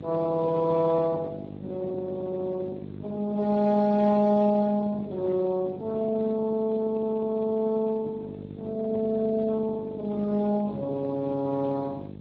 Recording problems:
lossy compression; Speex, log-spectral distance 2 dB
hum; 50 Hz, harmonics up to 650 Hz, SNR 14 dB

